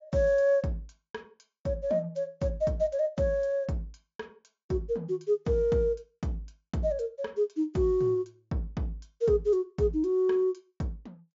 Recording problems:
treble cut off; nothing above 7.2 kHz

